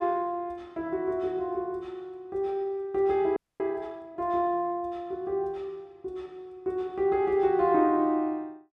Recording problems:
audio freezing; at 3.5 s

